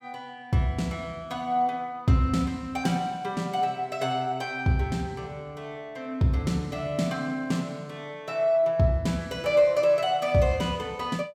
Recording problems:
none

